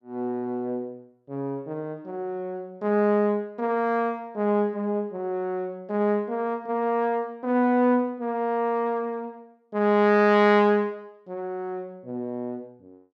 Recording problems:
none

